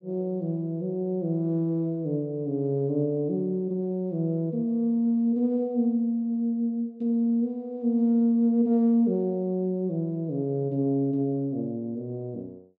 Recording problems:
none

